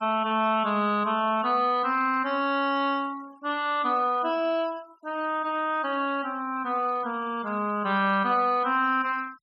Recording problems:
noise reduction artefacts; signal-to-artefact ratio 24 dB

